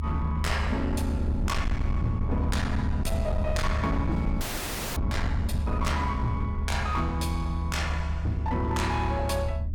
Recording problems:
distortion; hard clipping, signal-to-distortion ratio 11 dB
low-frequency rumble; below 90 Hz, SNR 0 dB
audio freezing; at 4.5 s for 0.5 s

